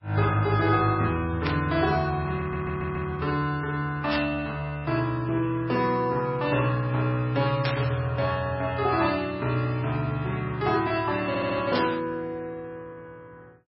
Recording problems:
lossy compression; MP3, log-spectral distance 2 dB, nothing above 4.8 kHz
burst of static; 4 times, first at 1.5 s; peak +1 dB vs average level
audio stuttering; at 2.5 s and at 11 s

